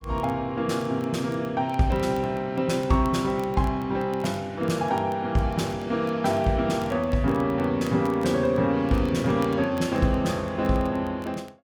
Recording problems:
crackle; vinyl, SNR 27 dB

